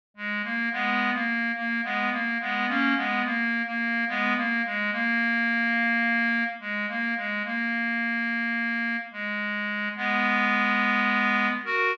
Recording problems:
none

